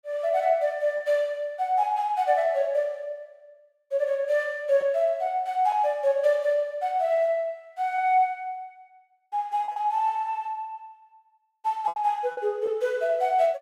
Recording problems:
packet loss; 3% of the sound replaced, filled with repeated pitch periods

